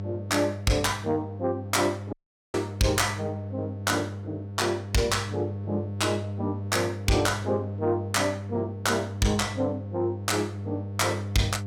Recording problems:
distortion; soft clipping, signal-to-distortion ratio 12 dB
electrical hum; 50 Hz, harmonics up to 700 Hz, SNR 8 dB
dropout; at 2 s

